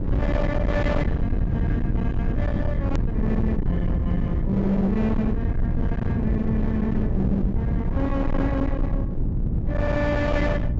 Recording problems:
low-pass filter; nothing above 8 kHz
distortion; hard clipping, signal-to-distortion ratio 8 dB
hum; 60 Hz, harmonics up to 600 Hz, SNR 10 dB
low-frequency rumble; below 170 Hz, SNR -1 dB
edit click; at 3 s

